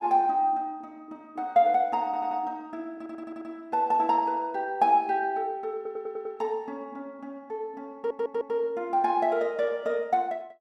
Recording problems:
stutter; 4 times, first at 2 s

